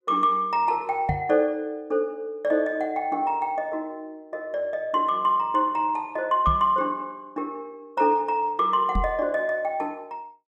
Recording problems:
knock on the microphone; at 1 s, at 6.5 s and at 9 s; peak +1 dB vs average level

